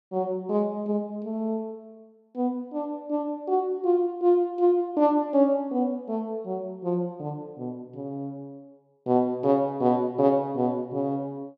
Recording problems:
none

